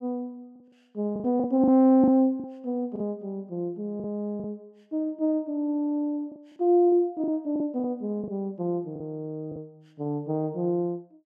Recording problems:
lost packets; 6% of the sound replaced, filled with the last packet

